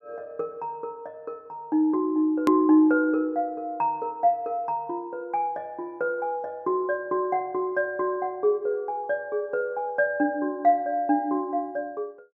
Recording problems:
click at an edit; at 2.5 s

